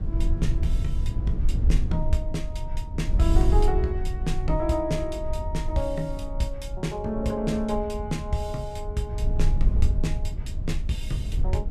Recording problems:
low-frequency rumble; below 66 Hz, SNR -1 dB

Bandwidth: 14.5 kHz